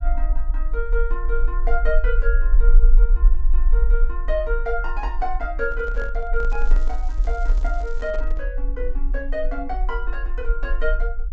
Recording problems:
treble cut off; nothing above 8 kHz
low-frequency rumble; below 38 Hz, strongest tone 24 Hz, SNR -5 dB
handling noise; from 5.5 to 8.5 s; peak -6 dB vs average level
crackle; from 6.5 to 8 s; loose cable, SNR 24 dB

